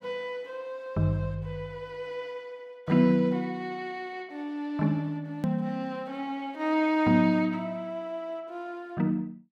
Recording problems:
click at an edit; at 5.5 s

